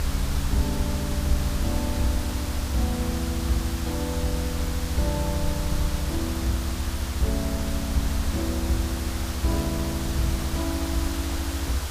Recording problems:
hiss; slope -2 dB per octave, SNR 4 dB
low-frequency rumble; below 78 Hz, SNR 1 dB

